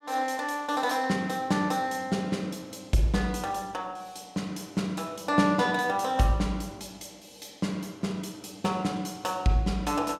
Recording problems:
none

